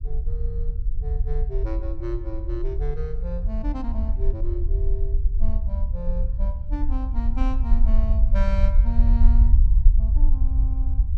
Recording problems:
rumble; below 54 Hz, SNR -11 dB

